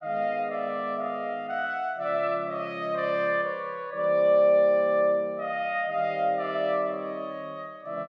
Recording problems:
none

